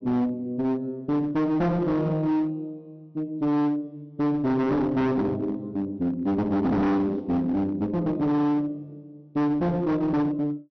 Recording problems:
low-pass filter; nothing above 6 kHz
distortion; hard clipping, uneven, signal-to-distortion ratio 6 dB

